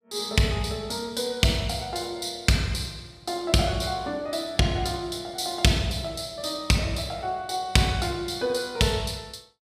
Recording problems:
none

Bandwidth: 15.5 kHz